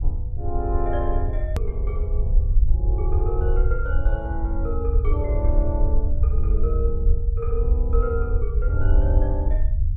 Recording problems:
rumble; below 66 Hz, SNR -7 dB
click at an edit; at 1.5 s

